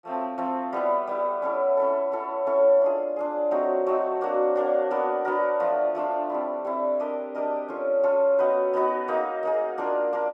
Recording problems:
none

